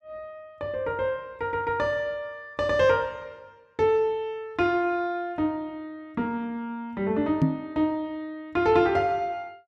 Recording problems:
knock on the microphone; at 7.5 s; peak +8 dB vs average level

